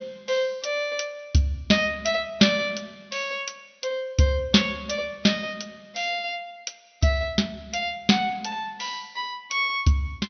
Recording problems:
treble cut off; nothing above 6.2 kHz

